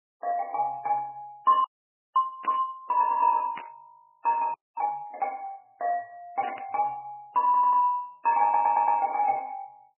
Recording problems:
codec artefacts; MP3, log-spectral distance 2 dB, nothing above 2.6 kHz
frozen audio; at 1.5 s for 0.5 s and at 4.5 s
static burst; at 2.5 s, at 3.5 s and at 6.5 s; peak -9 dB vs average level
stutter; at 7.5 s and at 8.5 s

